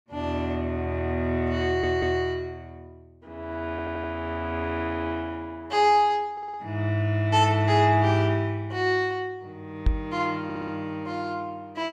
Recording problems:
stutter; 4 times, first at 1.5 s
microphone bump; at 10 s; peak +6 dB vs average level

